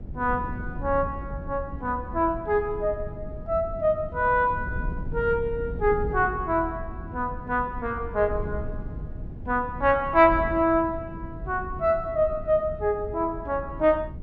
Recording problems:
wind noise; below 150 Hz, SNR 11 dB

